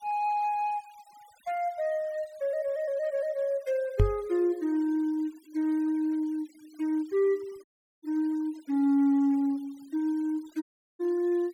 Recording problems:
denoising artefacts; signal-to-artefact ratio 28 dB
microphone thump; at 4 s; peak +8 dB vs average level
audio cutting out; at 7.5 s and at 11 s

